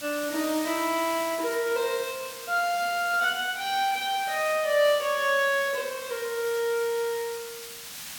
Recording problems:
background hiss; slope +3 dB per octave, SNR 11 dB

